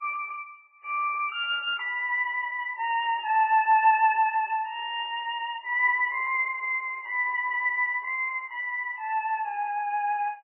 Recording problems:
lossy compression; MP3, log-spectral distance 3 dB, nothing above 2.8 kHz

